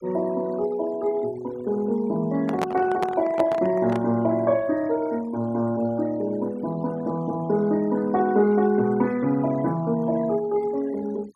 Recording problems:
denoising artefacts; signal-to-artefact ratio 22 dB
microphone handling noise; from 2.5 to 4 s; peak +1 dB vs average level

